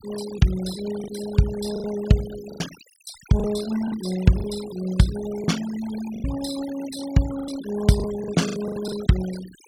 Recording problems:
denoising artefacts; signal-to-artefact ratio 14 dB
packet loss; 9% of the sound replaced, filled with the last packet

